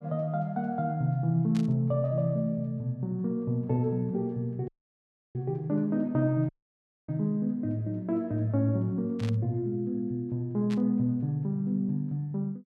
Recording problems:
static burst; at 1.5 s, at 9 s and at 11 s; peak -10 dB vs average level
audio cutting out; at 4.5 s for 0.5 s and at 6.5 s for 0.5 s

